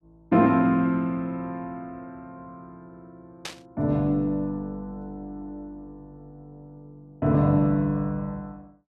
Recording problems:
burst of static; at 3.5 s; peak -5 dB vs average level

